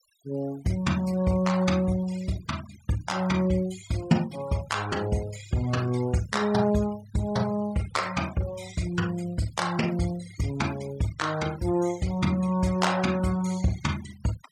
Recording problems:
denoising artefacts; signal-to-artefact ratio 18 dB

